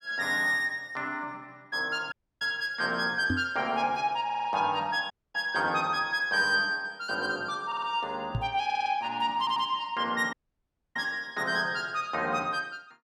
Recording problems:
audio cutting out; at 2 s, at 5 s and at 10 s for 0.5 s
microphone thump; at 3.5 s and at 8.5 s; peak +2 dB vs average level
stutter; 4 times, first at 4.5 s

